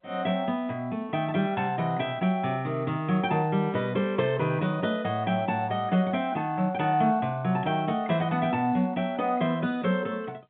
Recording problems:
phone line; 86 Hz to 3.9 kHz, G.711

